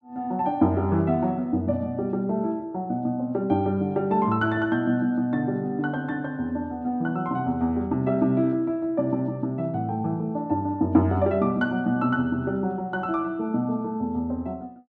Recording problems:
none

